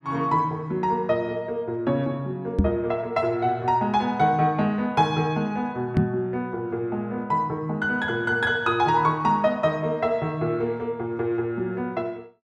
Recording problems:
knock on the microphone; at 2.5 s and at 6 s; peak +7 dB vs average level

